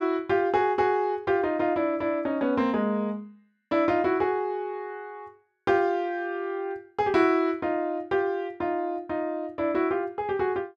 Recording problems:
none

